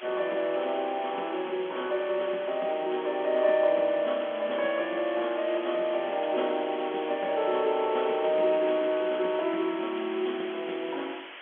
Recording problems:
phone line; 240 Hz to 3.4 kHz, G.711
hiss; SNR 14 dB

